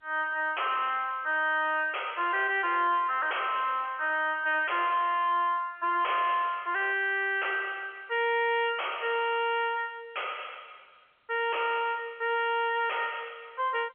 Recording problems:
telephone audio; 320 Hz to 3.3 kHz, G.711
distortion; soft clipping, signal-to-distortion ratio 6 dB

